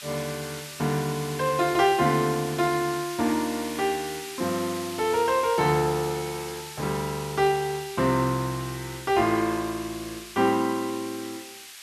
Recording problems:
background hiss; SNR 12 dB

